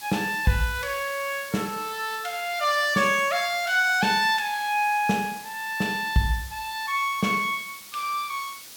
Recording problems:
hiss; slope +2 dB per octave, SNR 16 dB

